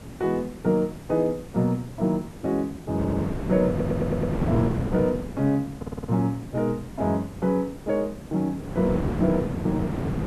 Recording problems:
background hiss; slope -3 dB per octave, SNR 23 dB
wind on the microphone; below 360 Hz, SNR 5 dB
stutter; at 3 s, at 3.5 s and at 6 s

